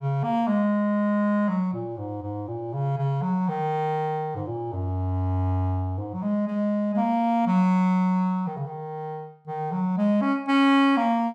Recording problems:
none

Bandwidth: 14.5 kHz